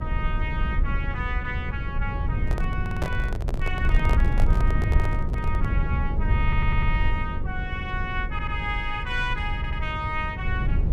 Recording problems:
electrical hum; 50 Hz, harmonics up to 550 Hz, SNR 12 dB
rumble; below 86 Hz, SNR -4 dB
microphone handling noise; from 2.5 to 5.5 s; peak +4 dB vs average level
stutter; 4 times, first at 3 s

